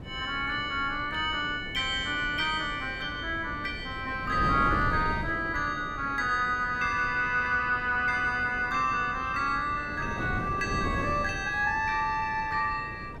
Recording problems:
wind on the microphone; below 380 Hz, SNR 11 dB

